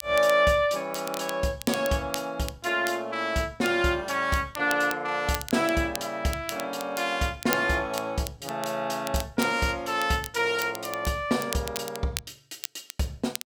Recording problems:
crackle; vinyl, SNR 13 dB

